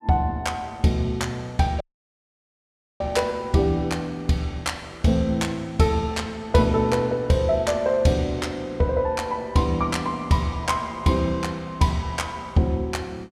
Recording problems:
audio cutting out; at 2 s for 1 s

